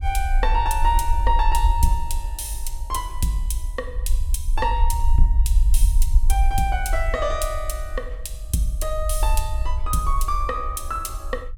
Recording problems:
rumble; below 52 Hz, SNR -1 dB

